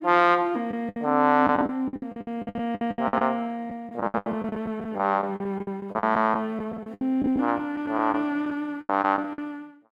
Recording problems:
packet loss; 18% of the sound replaced, filled with the last packet

